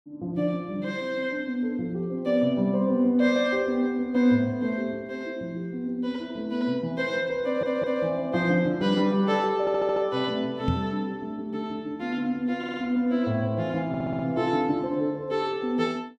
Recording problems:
stutter; 4 times, first at 7.5 s
microphone bump; at 11 s; peak +3 dB vs average level

